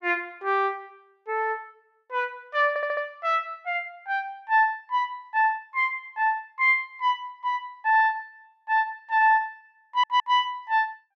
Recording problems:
stutter; at 2.5 s and at 10 s

